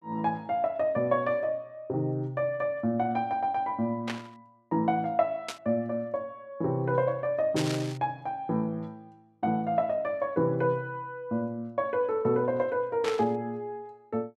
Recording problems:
burst of static; 4 times, first at 4 s; peak 0 dB vs average level

